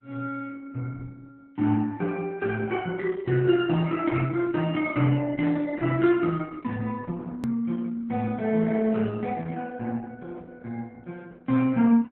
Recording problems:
codec artefacts; Opus, log-spectral distance 3 dB, nothing above 13.1 kHz
hard cut with a click; at 7.5 s

